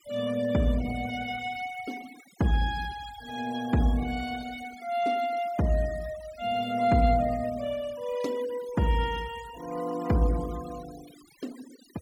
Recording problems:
noise reduction artefacts; signal-to-artefact ratio 18 dB

